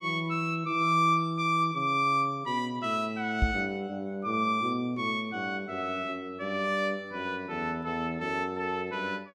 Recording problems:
knock on the microphone; at 3.5 s; peak +6 dB vs average level

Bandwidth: 14.5 kHz